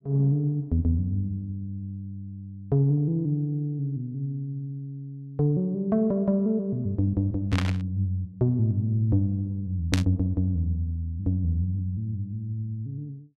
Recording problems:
burst of static; at 7.5 s and at 10 s; peak +3 dB vs average level

